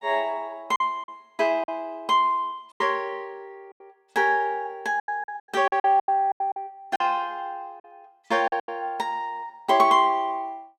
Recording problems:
lost packets; 9% of the sound replaced, filled with silence

